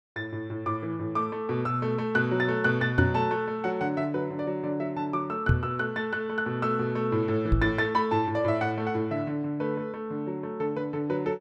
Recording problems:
microphone thump; at 3 s, at 5.5 s and at 7.5 s; peak +7 dB vs average level

